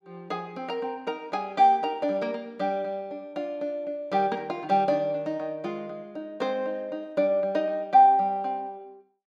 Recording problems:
none

